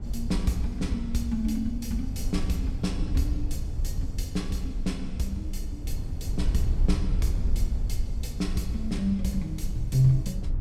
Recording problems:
low-frequency rumble; below 74 Hz, SNR 3 dB

